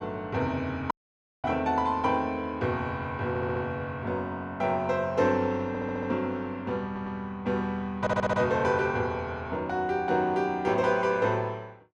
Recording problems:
dropout; at 1 s for 0.5 s
stutter; 4 times, first at 3.5 s

